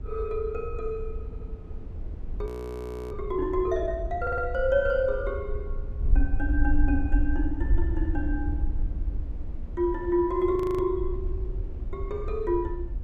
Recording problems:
rumble; below 76 Hz, SNR 13 dB
wind noise; below 62 Hz, SNR 4 dB
stutter; at 1.5 s and at 4 s
frozen audio; at 2.5 s for 0.5 s and at 11 s

